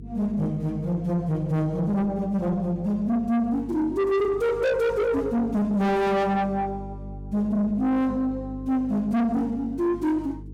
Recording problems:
distortion; soft clipping, signal-to-distortion ratio 8 dB
hum; 50 Hz, harmonics up to 450 Hz, SNR 16 dB

